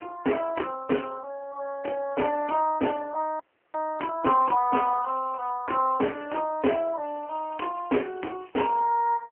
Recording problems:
phone line; 260 Hz to 3.1 kHz, AMR-NB
frozen audio; at 3.5 s
crackling; at 5 s, at 6 s and from 7 to 9 s; loose cable, SNR 28 dB

